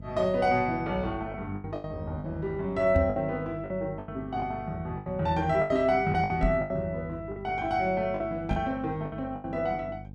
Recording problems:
hum; 50 Hz, harmonics up to 550 Hz, SNR 15 dB
lost packets; 10% of the sound replaced, filled with the last packet
knock on the microphone; at 3 s, at 6.5 s and at 8.5 s; peak +5 dB vs average level

